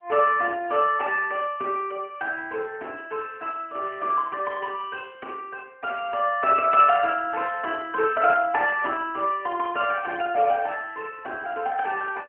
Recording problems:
phone line; 260 Hz to 3 kHz, AMR-NB

